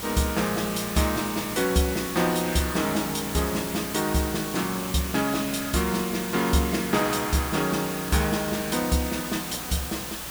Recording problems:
hum; 60 Hz, harmonics up to 360 Hz, SNR 22 dB
hiss; slope -2 dB per octave, SNR 7 dB

